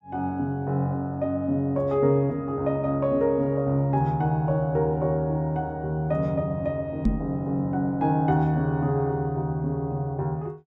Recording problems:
microphone thump; at 7 s; peak +7 dB vs average level

